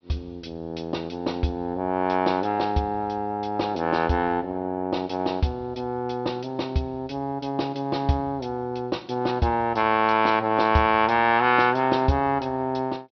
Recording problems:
treble missing; nothing above 5.7 kHz

